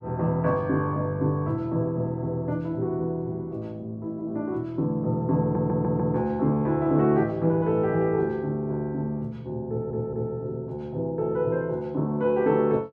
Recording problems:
audio stuttering; at 5.5 s and at 9.5 s

